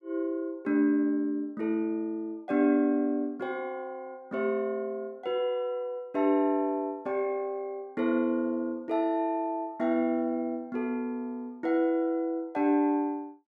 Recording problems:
none

